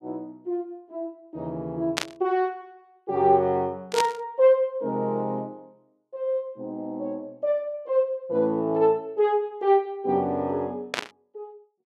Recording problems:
static burst; at 2 s, at 4 s and at 11 s; peak +4 dB vs average level

